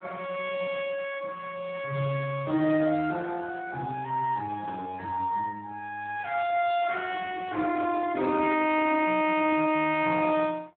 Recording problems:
telephone audio; 190 Hz to 3.9 kHz, Speex

